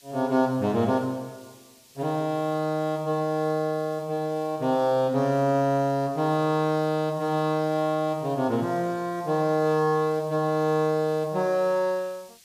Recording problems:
hiss; SNR 27 dB

